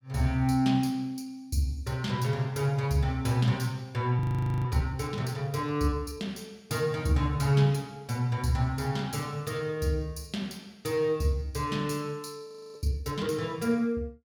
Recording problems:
audio freezing; at 4 s and at 12 s

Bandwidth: 18 kHz